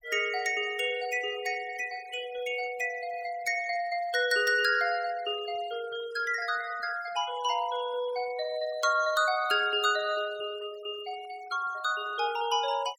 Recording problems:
denoising artefacts; signal-to-artefact ratio 19 dB

